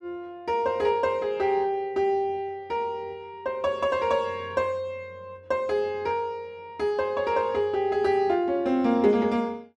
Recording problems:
none

